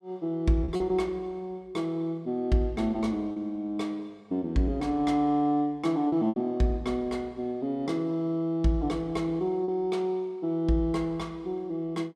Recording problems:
packet loss; 2% of the sound replaced, filled with repeated pitch periods

